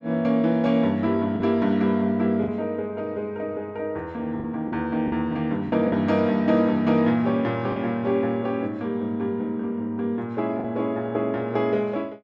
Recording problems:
packet loss; 3% of the sound replaced, filled with the last packet

